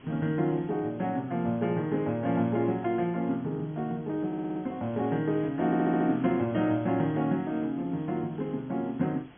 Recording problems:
treble cut off; nothing above 3.4 kHz
hiss; SNR 25 dB
stutter; at 4.5 s and at 5.5 s

